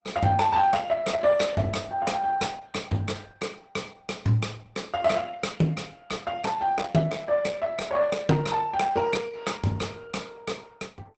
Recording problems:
lossy codec; Opus, log-spectral distance 4 dB, nothing above 8.2 kHz

